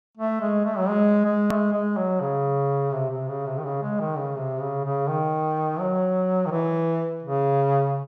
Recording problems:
hard cut with a click; at 1.5 s

